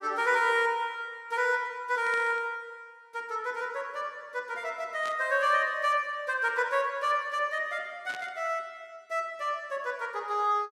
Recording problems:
static burst; at 2 s, at 5 s and at 8 s; peak -10 dB vs average level

